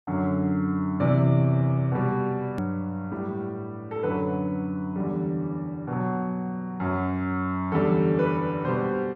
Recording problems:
click at an edit; at 2.5 s

